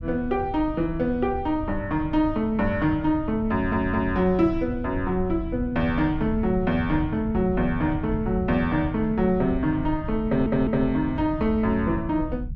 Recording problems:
rumble; below 110 Hz, SNR 11 dB
stutter; at 3.5 s and at 10 s

